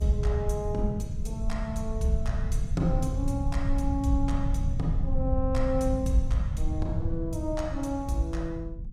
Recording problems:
low-frequency rumble; below 96 Hz, SNR 0 dB

